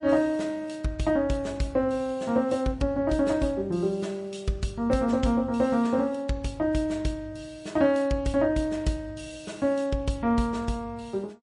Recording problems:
lossy codec; MP3, log-spectral distance 2 dB, nothing above 10.1 kHz

